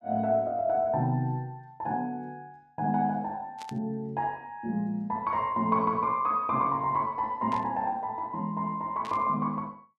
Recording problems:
static burst; at 3.5 s, at 7.5 s and at 9 s; peak -10 dB vs average level

